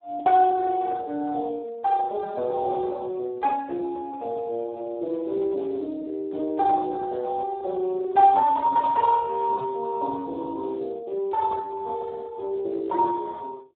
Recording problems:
phone line; 320 Hz to 2.1 kHz, Speex

